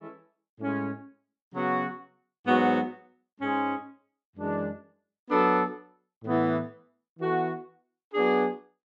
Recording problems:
none

